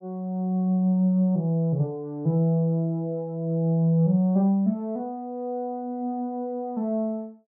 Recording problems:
none

